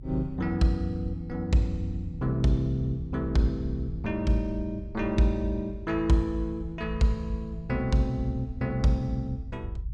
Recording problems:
rumble; below 88 Hz, strongest tone 52 Hz, SNR 12 dB

